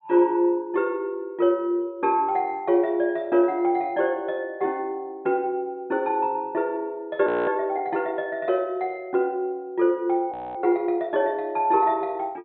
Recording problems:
treble cut off; nothing above 4 kHz
frozen audio; at 7.5 s and at 10 s

